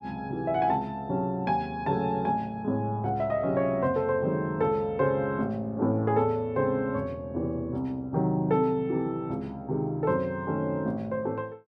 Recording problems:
none

